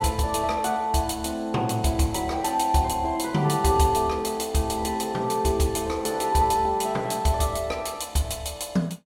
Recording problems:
none

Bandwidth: 17 kHz